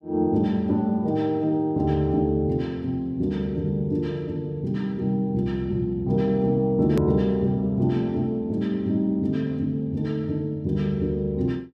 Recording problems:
click at an edit; at 7 s

